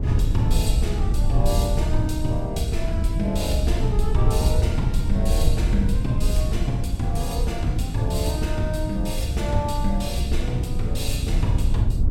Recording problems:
rumble; below 86 Hz, SNR -2 dB

